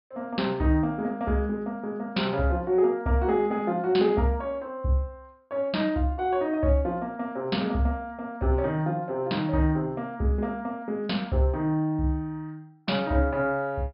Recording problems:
treble cut off; nothing above 5.5 kHz

